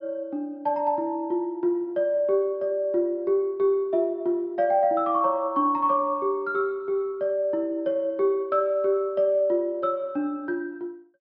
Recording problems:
treble cut off; nothing above 5.5 kHz

